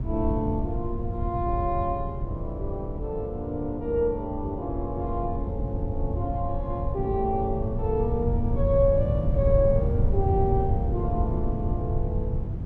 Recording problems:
low-frequency rumble; below 120 Hz, SNR 1 dB

